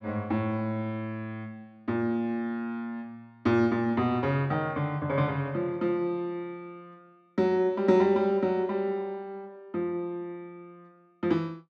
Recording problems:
none

